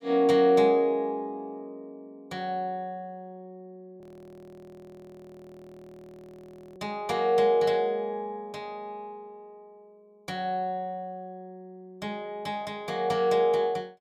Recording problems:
audio freezing; at 4 s for 3 s

